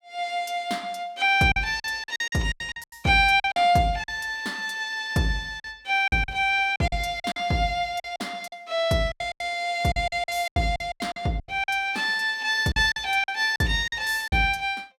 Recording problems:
packet loss; 12% of the sound replaced, filled with silence

